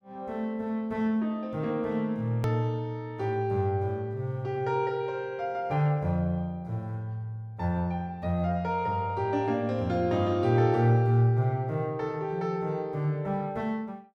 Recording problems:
edit click; at 2.5 s

